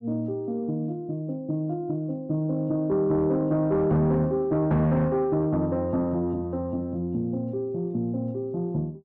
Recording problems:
distorted audio; soft clipping, signal-to-distortion ratio 12 dB

